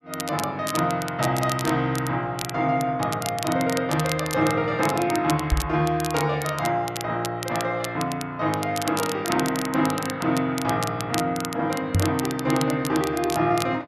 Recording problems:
crackling; vinyl, SNR 10 dB
microphone bump; at 5.5 s and at 12 s; peak +6 dB vs average level

